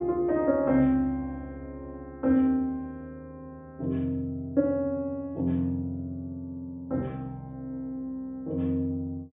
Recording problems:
low-pass filter; nothing above 4 kHz

